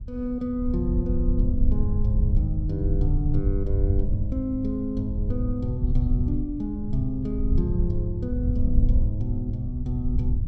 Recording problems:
low-frequency rumble; below 78 Hz, SNR -2 dB

